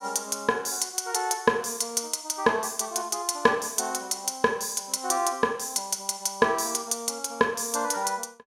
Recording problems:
none

